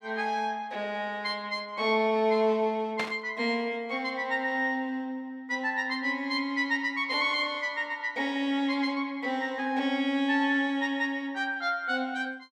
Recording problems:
burst of static; at 3 s; peak 0 dB vs average level

